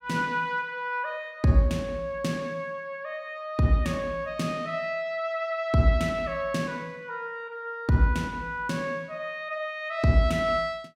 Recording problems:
none

